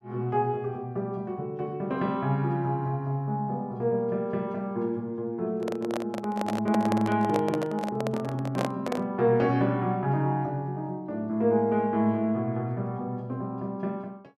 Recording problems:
microphone handling noise; from 5.5 to 9 s; peak +2 dB vs average level

